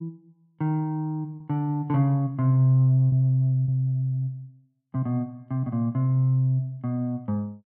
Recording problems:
lost packets; 1.8% of the sound replaced, filled with repeated pitch periods

